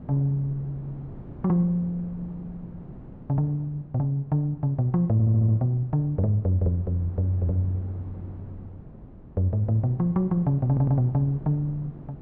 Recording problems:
wind on the microphone; below 260 Hz, SNR 18 dB
stutter; at 5 s and at 11 s

